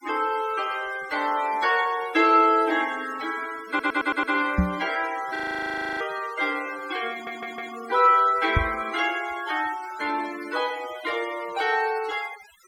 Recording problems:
denoising artefacts; signal-to-artefact ratio 16 dB
stutter; at 3.5 s and at 7 s
microphone thump; at 4.5 s and at 8.5 s; peak +6 dB vs average level
audio freezing; at 5.5 s for 0.5 s

